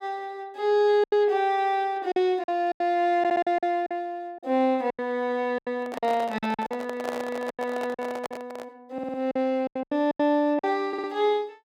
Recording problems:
packet loss; 11% of the sound replaced, filled with silence
stutter; at 3 s, at 9 s and at 11 s
microphone handling noise; from 6 to 8.5 s; peak -3 dB vs average level

